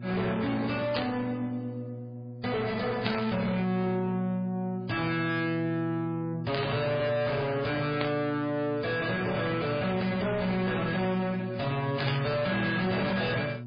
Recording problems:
lossy codec; MP3, log-spectral distance 3 dB, nothing above 4.6 kHz
distorted audio; soft clipping, signal-to-distortion ratio 6 dB
hum; 60 Hz, harmonics up to 600 Hz, SNR 10 dB
static burst; 5 times, first at 1 s; peak +2 dB vs average level

